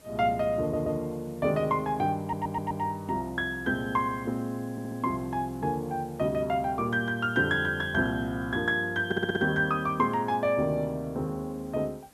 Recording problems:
background hiss; slope -4 dB per octave, SNR 26 dB
stutter; 4 times, first at 0.5 s

